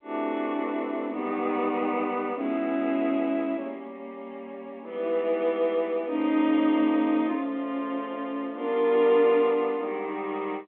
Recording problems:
telephone audio; 240 Hz to 3.6 kHz, G.711

